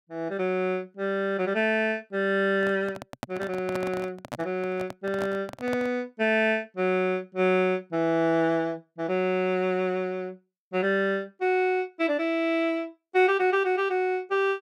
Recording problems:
handling noise; from 2.5 to 6 s; peak -3 dB vs average level

